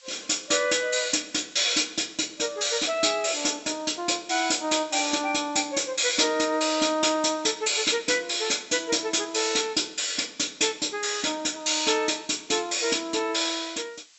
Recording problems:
treble missing; nothing above 7.9 kHz
background hiss; slope +5 dB per octave, SNR 27 dB

